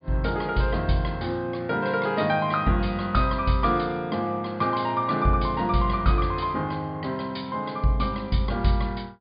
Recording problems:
treble missing; nothing above 5 kHz

